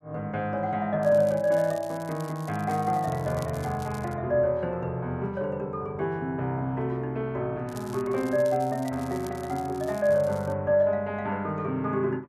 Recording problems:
crackle; from 1 to 4 s and from 7.5 to 11 s; loose cable, SNR 22 dB

